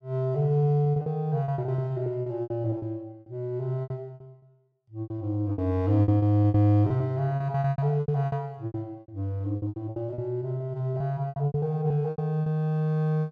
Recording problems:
lost packets; 17% of the sound replaced, filled with repeated pitch periods

